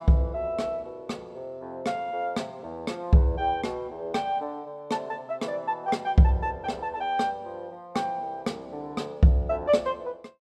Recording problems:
none

